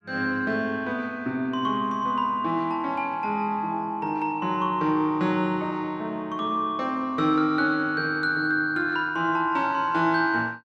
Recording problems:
none

